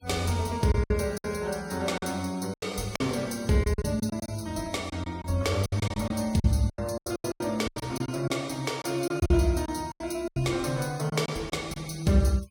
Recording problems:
denoising artefacts; signal-to-artefact ratio 22 dB
packet loss; 12% of the sound replaced, filled with silence

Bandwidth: 17 kHz